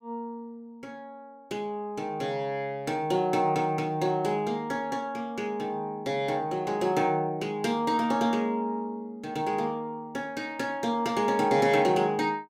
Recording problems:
none

